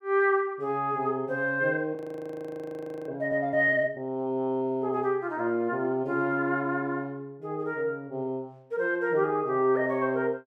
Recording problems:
audio freezing; at 2 s for 1 s

